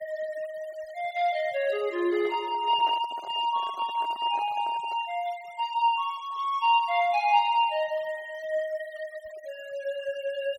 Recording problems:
denoising artefacts; signal-to-artefact ratio 22 dB
handling noise; from 2 to 5 s; peak -10 dB vs average level

